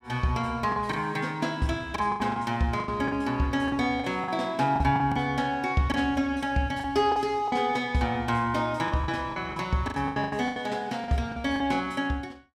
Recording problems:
packet loss; 11% of the sound replaced, filled with the last packet

